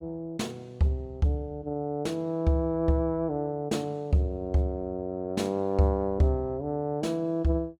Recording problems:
none

